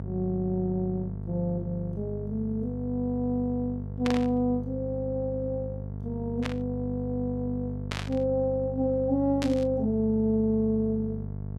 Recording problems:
hum; 50 Hz, harmonics up to 650 Hz, SNR 7 dB
burst of static; 4 times, first at 4 s; peak -1 dB vs average level

